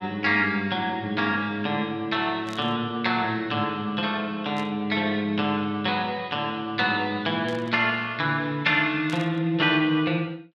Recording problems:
burst of static; 4 times, first at 2.5 s; peak -11 dB vs average level

